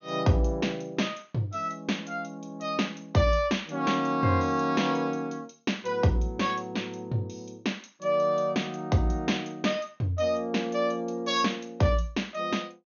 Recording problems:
treble missing; nothing above 6.6 kHz

